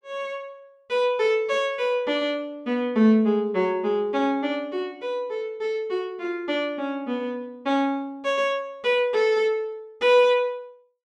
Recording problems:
none

